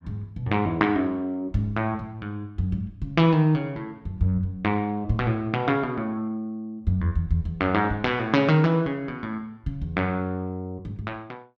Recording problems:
none

